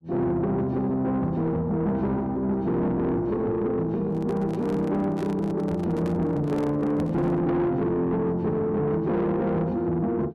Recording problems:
distortion; soft clipping, signal-to-distortion ratio 11 dB
handling noise; from 4 to 7.5 s; peak -7 dB vs average level

